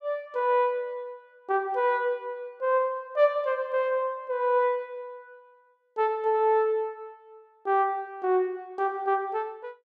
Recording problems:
none

